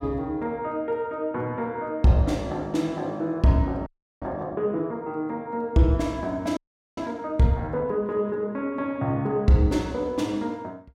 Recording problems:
frozen audio; at 4 s and at 6.5 s

